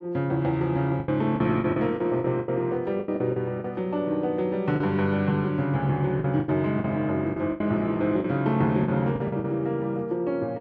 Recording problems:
packet loss; 10% of the sound replaced, filled with the last packet

